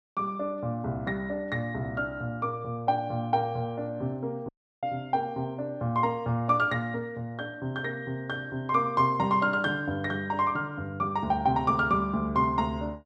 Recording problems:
dropout; at 4.5 s

